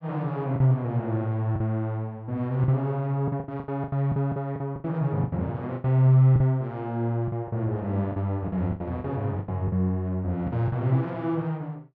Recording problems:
packet loss; 11% of the sound replaced, filled with the last packet

